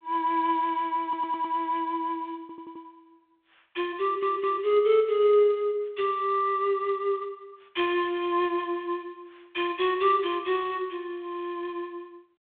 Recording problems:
phone line; 370 Hz to 3.8 kHz, G.726
stutter; at 1 s, at 2.5 s and at 4 s

